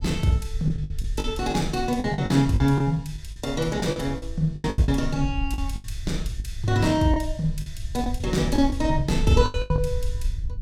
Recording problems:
low-frequency rumble; below 68 Hz, SNR 8 dB
lost packets; 11% of the sound replaced, filled with the last packet

